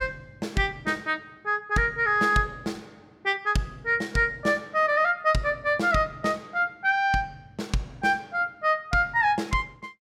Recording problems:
none

